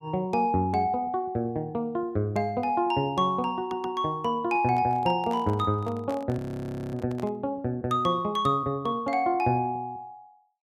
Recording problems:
audio stuttering; at 3.5 s
microphone handling noise; from 4.5 to 7.5 s; peak -9 dB vs average level
audio freezing; at 6.5 s for 0.5 s

